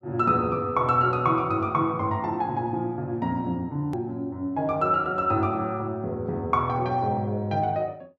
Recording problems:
edit click; at 4 s

